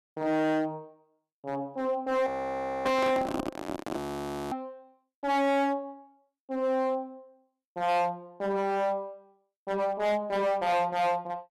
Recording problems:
distorted audio; hard clipping, uneven, signal-to-distortion ratio 6 dB
frozen audio; at 2.5 s for 0.5 s and at 4 s for 0.5 s
microphone handling noise; from 3 to 4.5 s; peak +1 dB vs average level

